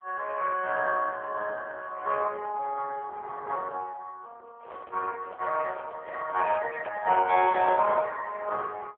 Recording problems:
telephone audio; 260 Hz to 2.2 kHz, AMR-NB
microphone handling noise; from 4.5 to 8 s; peak -6 dB vs average level

